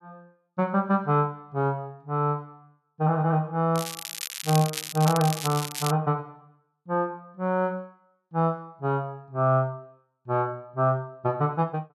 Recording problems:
crackle; from 4 to 6 s; loose cable, SNR 7 dB

